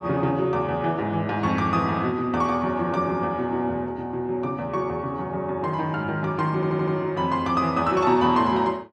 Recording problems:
stutter; at 6.5 s

